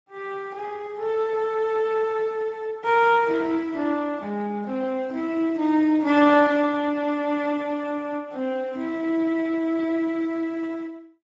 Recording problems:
lossy codec; Speex, log-spectral distance 2 dB

